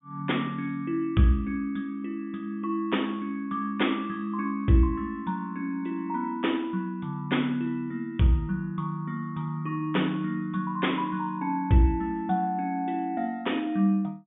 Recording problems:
treble cut off; nothing above 3.6 kHz

